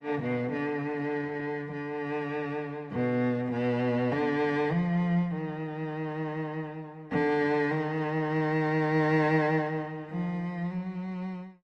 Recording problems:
lossy compression; Opus, log-spectral distance 2 dB

